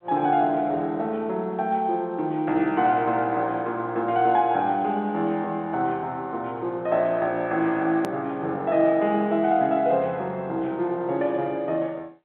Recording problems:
telephone audio; 190 Hz to 3.8 kHz, G.711
click at an edit; at 8 s

